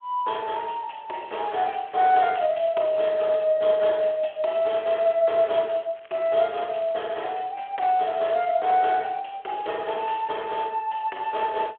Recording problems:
phone line; 340 Hz to 3.4 kHz, Speex
crackle; 4 times, first at 1.5 s; loose cable, SNR 29 dB

